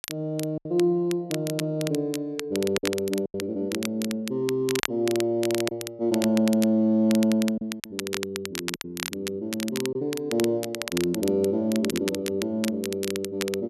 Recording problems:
crackle; vinyl, SNR 9 dB
lost packets; 4% of the sound replaced, filled with silence

